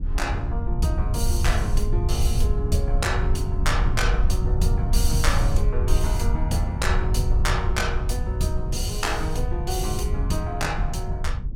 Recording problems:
rumble; below 80 Hz, SNR -3 dB

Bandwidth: 17 kHz